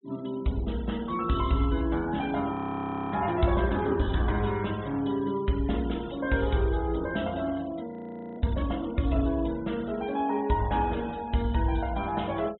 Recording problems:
treble missing; nothing above 3.9 kHz
denoising artefacts; signal-to-artefact ratio 21 dB
audio freezing; at 2.5 s for 0.5 s and at 8 s

